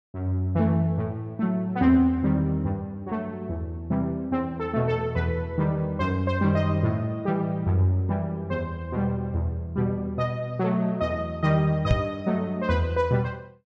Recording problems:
microphone bump; at 12 s; peak +9 dB vs average level

